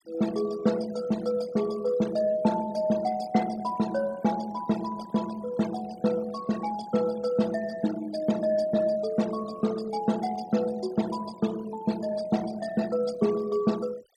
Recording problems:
noise reduction artefacts; signal-to-artefact ratio 18 dB

